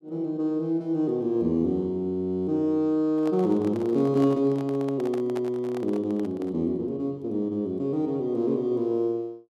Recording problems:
microphone handling noise; from 3 to 6.5 s; peak -8 dB vs average level

